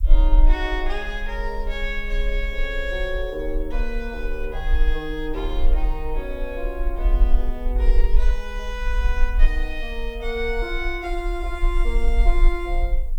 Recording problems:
background hiss; slope -3 dB per octave, SNR 29 dB
rumble; below 40 Hz, SNR -4 dB

